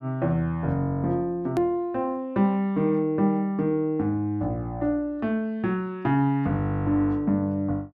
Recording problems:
edit click; at 1.5 s

